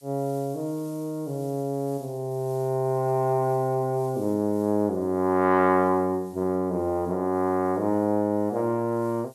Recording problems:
background hiss; SNR 27 dB

